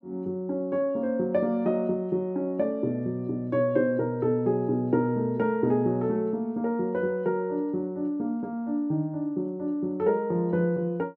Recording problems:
none

